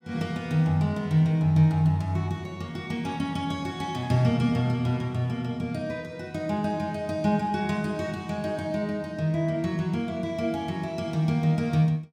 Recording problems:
none

